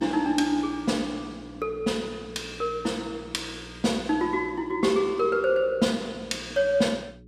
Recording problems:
electrical hum; 60 Hz, harmonics up to 420 Hz, SNR 21 dB

